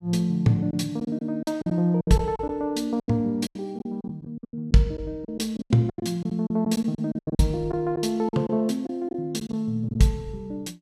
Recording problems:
lost packets; 13% of the sound replaced, filled with silence

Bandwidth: 14.5 kHz